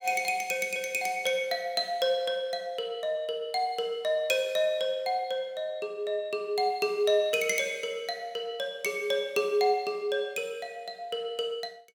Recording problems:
none

